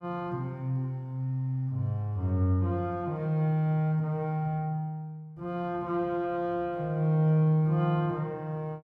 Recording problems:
none

